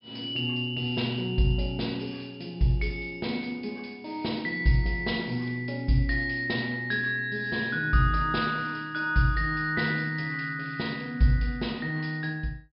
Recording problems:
treble missing; nothing above 5.5 kHz

